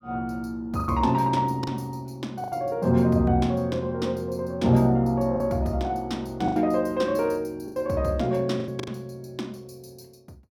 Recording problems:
packet loss; 6% of the sound replaced, filled with the last packet

